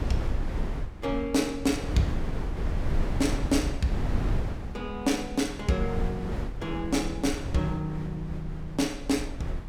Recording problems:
wind on the microphone; below 140 Hz, SNR 4 dB

